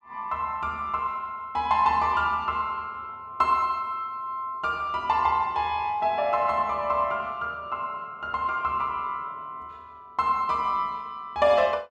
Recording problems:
none

